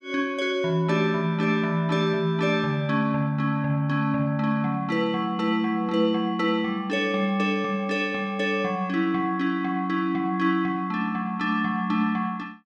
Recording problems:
none

